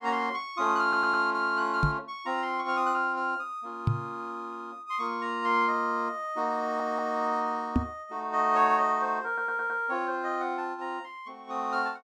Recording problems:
audio stuttering; at 1 s, at 6.5 s and at 9.5 s
microphone bump; at 2 s, at 4 s and at 8 s; peak +8 dB vs average level

